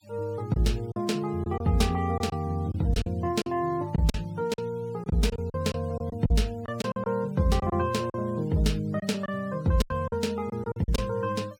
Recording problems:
noise reduction artefacts; signal-to-artefact ratio 26 dB
packet loss; 9% of the sound replaced, filled with silence

